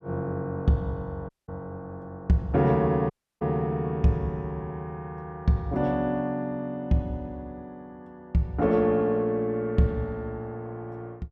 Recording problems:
dropout; at 1.5 s and at 3 s

